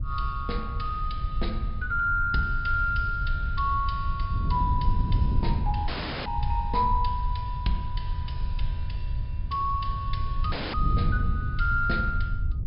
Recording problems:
low-pass filter; nothing above 5.5 kHz
low-frequency rumble; below 78 Hz, SNR 3 dB
wind noise; below 130 Hz, SNR 6 dB
dropout; at 6 s and at 11 s

